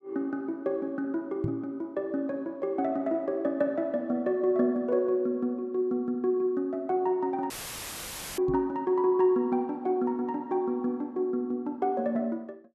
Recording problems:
microphone bump; at 1.5 s and at 8.5 s; peak 0 dB vs average level
dropout; at 7.5 s for 1 s; filled with static

